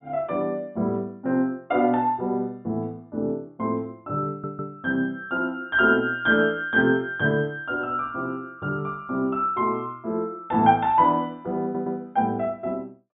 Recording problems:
low-pass filter; nothing above 4 kHz
audio stuttering; at 4.5 s and at 12 s

